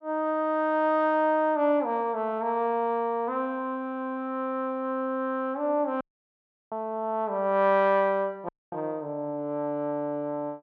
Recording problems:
audio cutting out; at 6 s for 0.5 s and at 8.5 s

